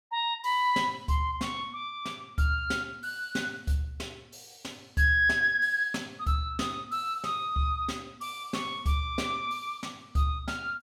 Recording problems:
none

